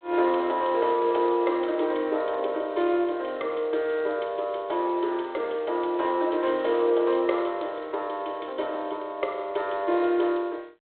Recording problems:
phone line; 300 Hz to 3.6 kHz, G.726

